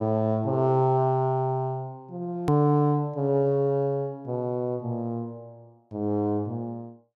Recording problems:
edit click; at 2.5 s

